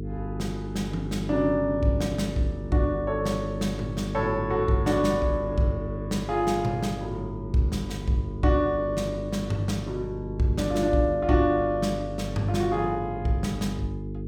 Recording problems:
electrical hum; 50 Hz, harmonics up to 450 Hz, SNR 7 dB

